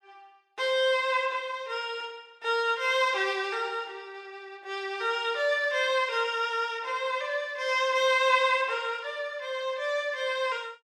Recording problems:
none

